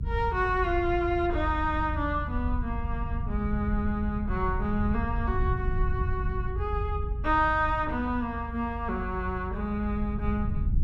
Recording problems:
rumble; below 86 Hz, SNR 3 dB

